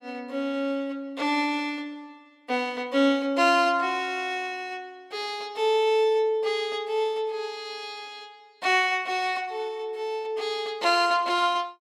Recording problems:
none

